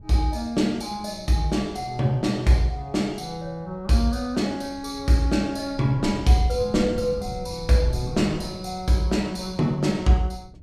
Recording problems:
wind on the microphone; below 140 Hz, SNR 17 dB

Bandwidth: 15 kHz